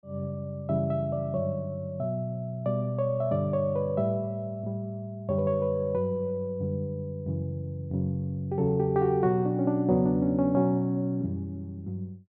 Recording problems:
low-pass filter; nothing above 5.5 kHz

